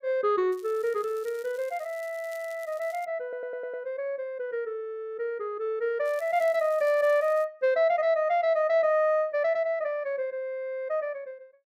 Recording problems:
crackle; from 0.5 to 3 s and from 6 to 7.5 s; loose cable, SNR 26 dB
stutter; at 3 s

